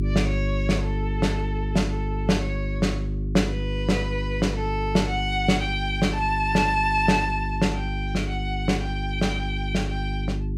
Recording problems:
hum; 50 Hz, harmonics up to 400 Hz, SNR 3 dB

